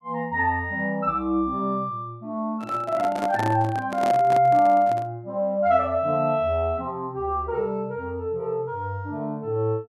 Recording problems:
handling noise; from 2.5 to 5 s; peak -2 dB vs average level

